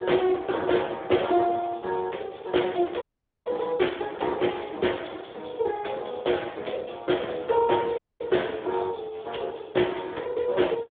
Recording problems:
phone line; 300 Hz to 3.6 kHz, Speex
dropout; at 3 s and at 8 s

